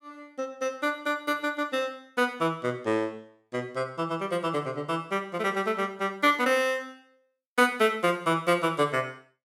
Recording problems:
none

